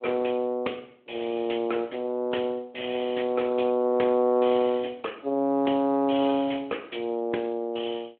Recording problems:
telephone audio; 260 Hz to 3.4 kHz, Speex

